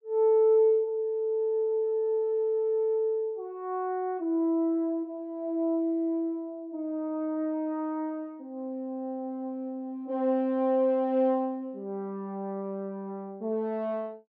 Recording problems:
none

